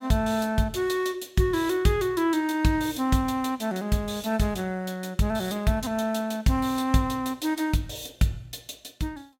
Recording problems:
none

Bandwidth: 17 kHz